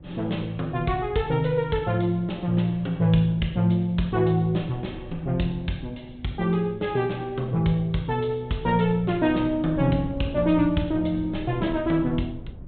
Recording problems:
treble cut off; nothing above 4 kHz
rumble; below 170 Hz, SNR 17 dB

